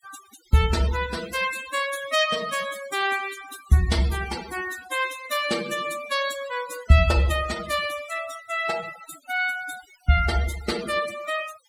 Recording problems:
noise reduction artefacts; signal-to-artefact ratio 13 dB

